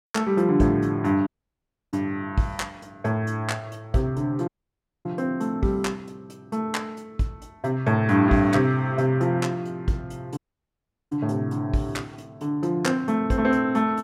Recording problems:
audio cutting out; at 1.5 s for 0.5 s, at 4.5 s for 0.5 s and at 10 s for 0.5 s

